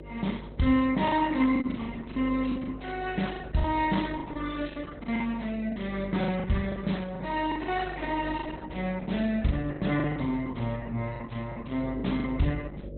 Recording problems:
codec artefacts; Opus, log-spectral distance 5 dB, nothing above 4 kHz
hum; 50 Hz, harmonics up to 600 Hz, SNR 14 dB
packet loss; 9% of the sound replaced, filled with the last packet

